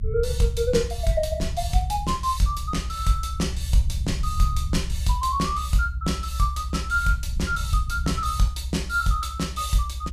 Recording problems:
low-frequency rumble; below 68 Hz, SNR 5 dB

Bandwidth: 14.5 kHz